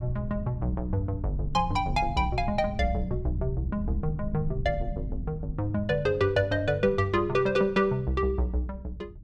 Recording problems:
rumble; below 120 Hz, SNR 10 dB

